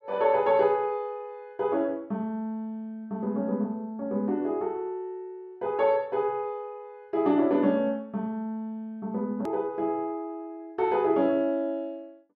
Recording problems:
edit click; at 9.5 s

